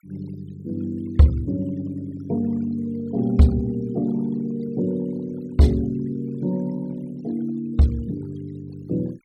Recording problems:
denoising artefacts; signal-to-artefact ratio 26 dB

